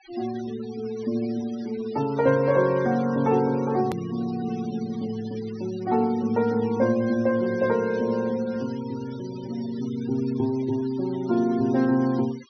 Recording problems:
treble cut off; nothing above 6.1 kHz
noise reduction artefacts; signal-to-artefact ratio 21 dB
hard cut with a click; at 4 s

